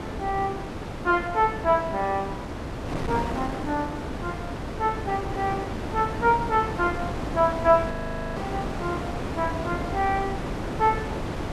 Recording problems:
wind on the microphone; below 750 Hz, SNR 5 dB
frozen audio; at 8 s

